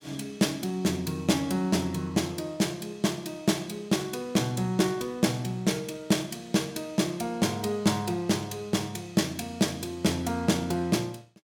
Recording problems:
none

